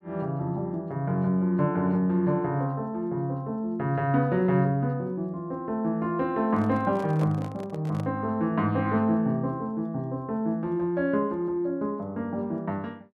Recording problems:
handling noise; from 6.5 to 8 s; peak -6 dB vs average level

